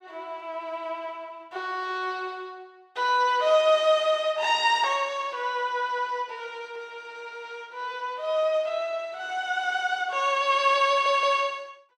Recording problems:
audio stuttering; at 11 s

